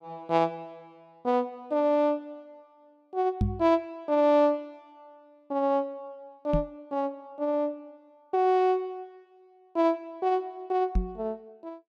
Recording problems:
microphone thump; at 3.5 s, at 6.5 s and at 11 s; peak +4 dB vs average level

